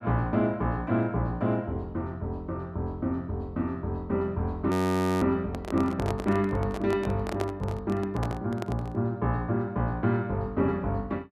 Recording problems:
frozen audio; at 4.5 s for 0.5 s
microphone handling noise; from 5.5 to 9 s; peak 0 dB vs average level

